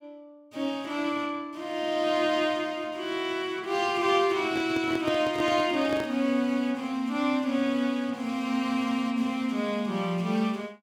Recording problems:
microphone handling noise; from 4.5 to 6 s; peak -3 dB vs average level

